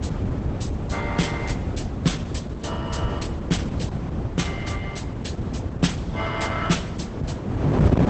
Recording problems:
lossy compression; Opus, log-spectral distance 3 dB, nothing above 8.2 kHz
wind noise; below 280 Hz, SNR -1 dB

